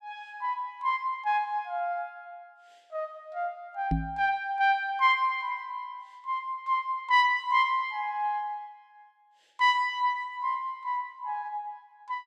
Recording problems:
microphone bump; at 4 s; peak +4 dB vs average level

